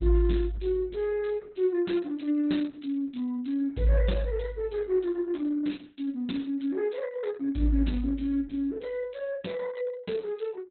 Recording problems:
codec artefacts; Opus, log-spectral distance 3 dB, nothing above 4 kHz

